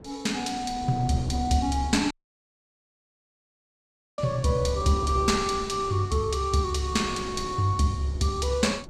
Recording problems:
wind noise; below 360 Hz, SNR 15 dB
audio cutting out; at 2 s for 2 s

